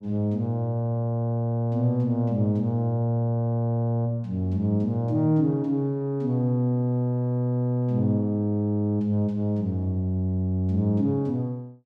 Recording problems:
none

